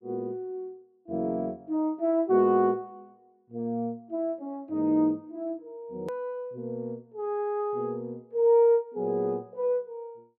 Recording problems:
edit click; at 6 s

